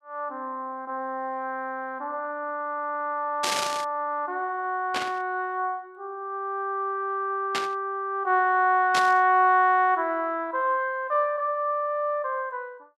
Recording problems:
burst of static; 4 times, first at 3.5 s; peak +2 dB vs average level

